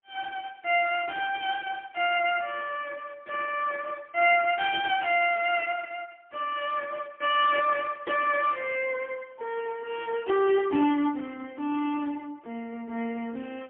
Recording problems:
telephone audio; 240 Hz to 3.4 kHz, AMR-NB, then MP3

